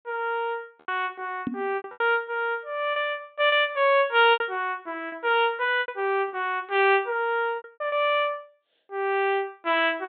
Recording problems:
treble cut off; nothing above 4 kHz
packet loss; 8% of the sound replaced, filled with repeated pitch periods
microphone bump; at 1.5 s; peak -1 dB vs average level

